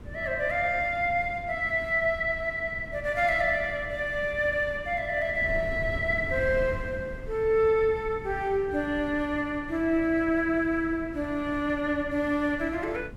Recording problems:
wind on the microphone; below 200 Hz, SNR 15 dB

